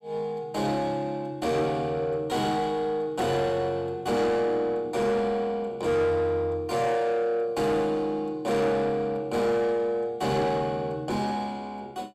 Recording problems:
distorted audio; soft clipping, signal-to-distortion ratio 11 dB

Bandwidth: 15 kHz